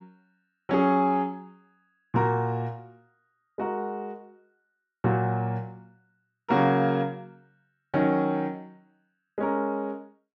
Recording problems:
none

